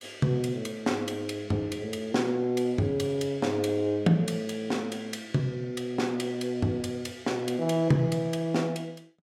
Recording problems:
none

